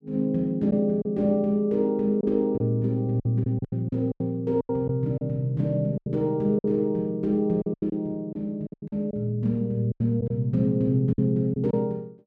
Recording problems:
lost packets; 10% of the sound replaced, filled with silence

